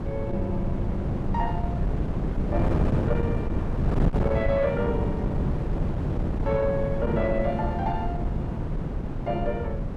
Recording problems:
distorted audio; soft clipping, signal-to-distortion ratio 10 dB
wind noise; below 230 Hz, SNR -1 dB

